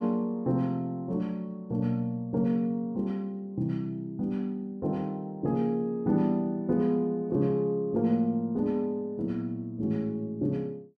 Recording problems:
none

